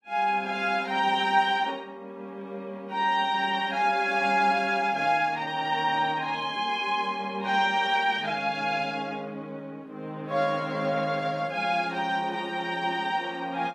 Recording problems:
lossy codec; AAC, log-spectral distance 2 dB, nothing above 13.5 kHz

